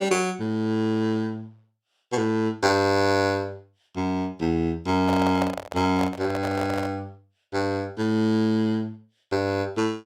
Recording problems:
microphone handling noise; from 5 to 7 s; peak 0 dB vs average level

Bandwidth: 16.5 kHz